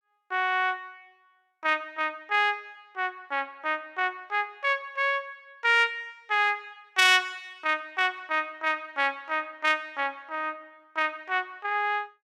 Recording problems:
none

